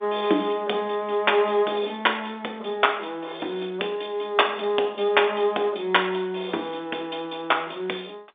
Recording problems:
phone line; 260 Hz to 3.7 kHz, G.711

